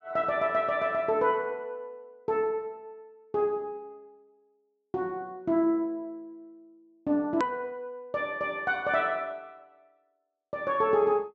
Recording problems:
treble cut off; nothing above 7.9 kHz
click at an edit; at 7.5 s

